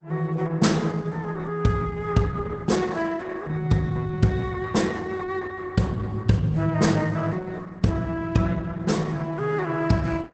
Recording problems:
codec artefacts; Opus, log-spectral distance 3 dB, nothing above 8 kHz

